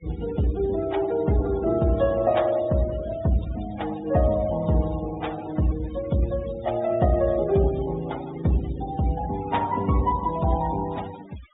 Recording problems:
low-pass filter; nothing above 4 kHz
denoising artefacts; signal-to-artefact ratio 18 dB

